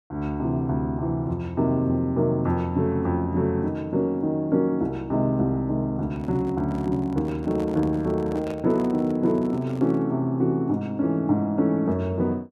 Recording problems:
handling noise; from 6 to 10 s; peak -10 dB vs average level

